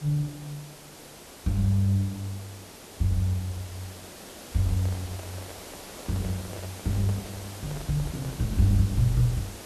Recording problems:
background hiss; slope -4 dB per octave, SNR 14 dB
microphone handling noise; from 4.5 to 8.5 s; peak -11 dB vs average level

